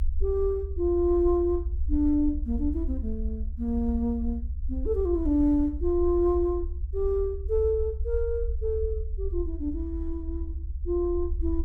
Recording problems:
low-frequency rumble; below 68 Hz, SNR 6 dB

